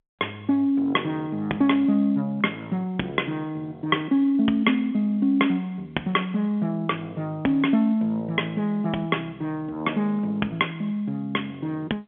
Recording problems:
phone line; 170 Hz to 3.4 kHz, G.711

